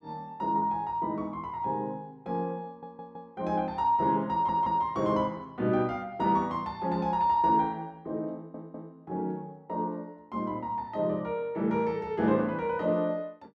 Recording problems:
stutter; at 2.5 s, at 4.5 s and at 8.5 s

